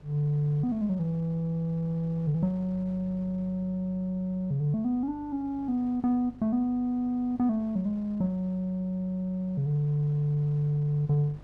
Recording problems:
mains hum; 50 Hz, harmonics up to 400 Hz, SNR 24 dB
wind on the microphone; below 570 Hz, SNR 27 dB

